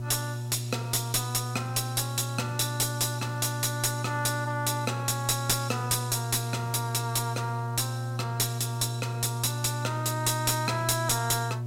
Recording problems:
distorted audio; soft clipping, signal-to-distortion ratio 9 dB
hum; 60 Hz, harmonics up to 720 Hz, SNR 5 dB
hiss; SNR 28 dB

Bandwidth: 16 kHz